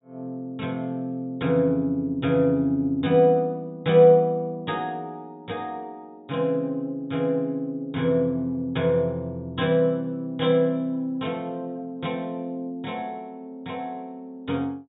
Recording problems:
treble cut off; nothing above 4 kHz

